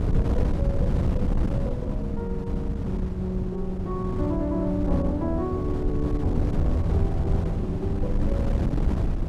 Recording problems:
wind noise; below 150 Hz, SNR -2 dB

